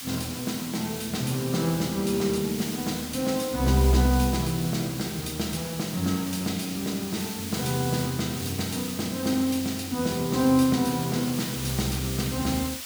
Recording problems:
hiss; slope +3 dB per octave, SNR 8 dB

